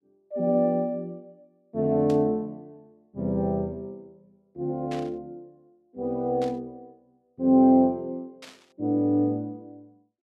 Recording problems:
static burst; 4 times, first at 2 s; peak -12 dB vs average level

